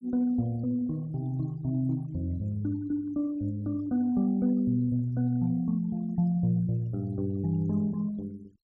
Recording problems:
denoising artefacts; signal-to-artefact ratio 28 dB

